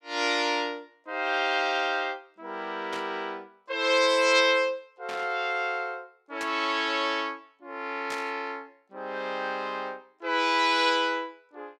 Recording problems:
burst of static; 4 times, first at 3 s; peak -6 dB vs average level

